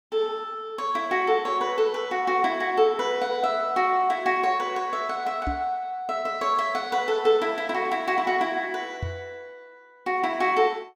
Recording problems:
knock on the microphone; at 5.5 s and at 9 s; peak -2 dB vs average level

